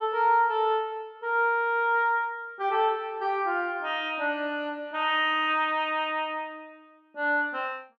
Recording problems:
none

